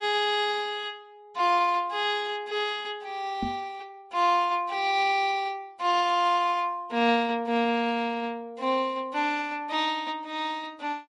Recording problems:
lossy codec; MP3, log-spectral distance 2 dB
knock on the microphone; at 3.5 s; peak -2 dB vs average level

